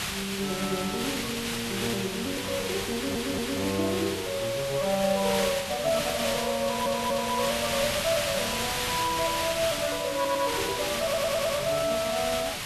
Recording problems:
hiss; SNR 2 dB
audio stuttering; 4 times, first at 3 s

